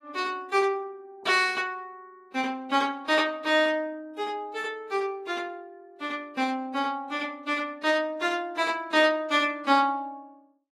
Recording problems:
lossy codec; AAC, log-spectral distance 2 dB, nothing above 14.3 kHz

